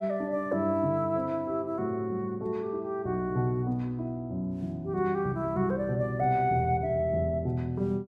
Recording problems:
none

